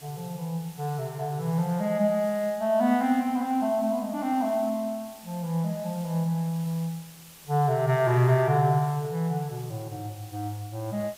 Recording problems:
background hiss; slope 0 dB per octave, SNR 21 dB

